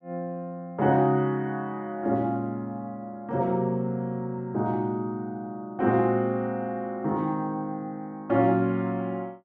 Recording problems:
none

